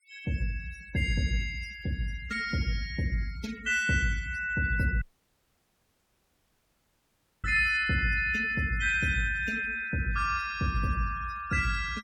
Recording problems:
denoising artefacts; signal-to-artefact ratio 17 dB
audio cutting out; at 5 s for 2.5 s

